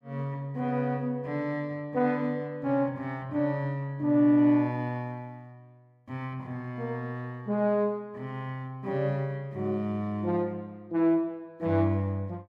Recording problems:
none

